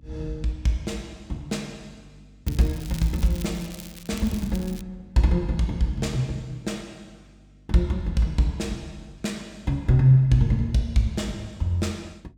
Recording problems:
hum; 50 Hz, harmonics up to 300 Hz, SNR 28 dB
crackle; from 2.5 to 5 s; loose cable, SNR 18 dB

